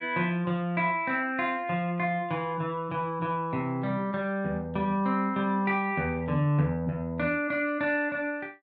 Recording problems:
none

